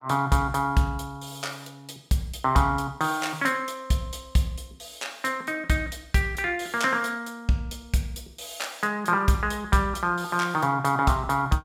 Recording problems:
none

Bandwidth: 16.5 kHz